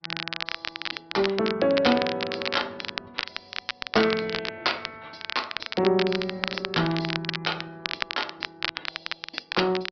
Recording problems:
low-pass filter; nothing above 5.3 kHz
lossy compression; Opus, log-spectral distance 5 dB
crackling; vinyl, SNR 5 dB

